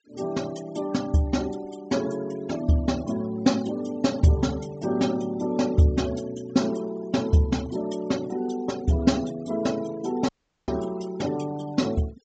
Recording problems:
treble cut off; nothing above 8 kHz
denoising artefacts; signal-to-artefact ratio 20 dB
audio cutting out; at 10 s

